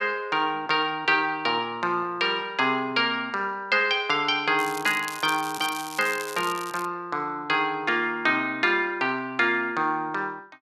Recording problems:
crackle; from 4.5 to 7 s; loose cable, SNR 13 dB

